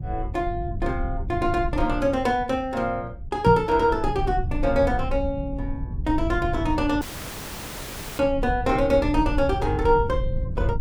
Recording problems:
low-frequency rumble; below 98 Hz, SNR 7 dB
microphone bump; at 3.5 s; peak +6 dB vs average level
audio cutting out; at 7 s for 1 s

